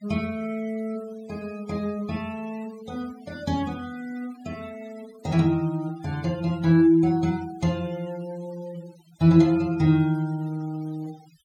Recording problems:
noise reduction artefacts; signal-to-artefact ratio 24 dB

